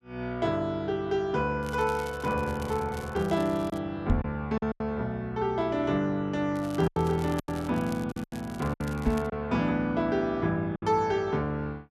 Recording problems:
packet loss; 5% of the sound replaced, filled with silence
crackle; from 1.5 to 4 s and from 6.5 to 9.5 s; loose cable, SNR 20 dB
microphone bump; at 4 s and at 9 s; peak +7 dB vs average level

